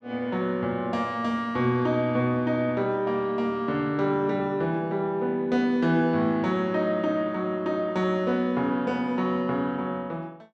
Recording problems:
none

